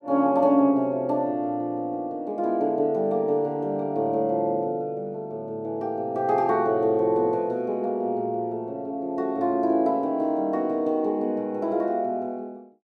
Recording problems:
none

